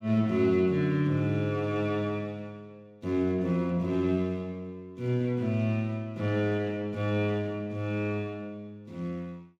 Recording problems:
none

